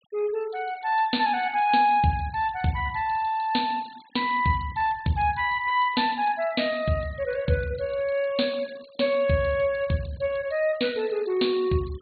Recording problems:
low-pass filter; nothing above 4.5 kHz
denoising artefacts; signal-to-artefact ratio 23 dB

